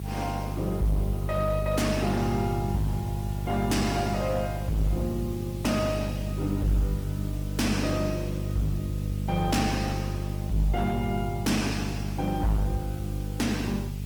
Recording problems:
lossy codec; Opus, log-spectral distance 4 dB, nothing above 20.1 kHz
distorted audio; hard clipping, signal-to-distortion ratio 7 dB
hum; 50 Hz, harmonics up to 450 Hz, SNR 3 dB
background hiss; slope +2 dB per octave, SNR 19 dB

